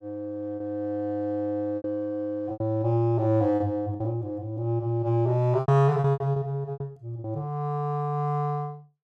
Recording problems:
packet loss; 8% of the sound replaced, filled with repeated pitch periods

